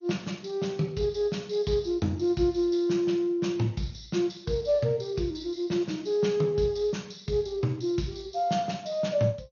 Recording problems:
lossy codec; Speex, then MP2, log-spectral distance 4 dB, nothing above 6.5 kHz

